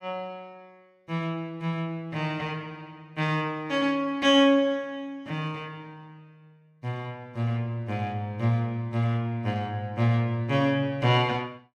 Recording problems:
none

